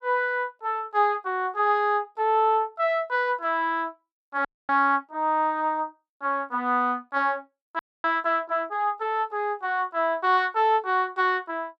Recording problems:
audio freezing; at 4.5 s and at 8 s

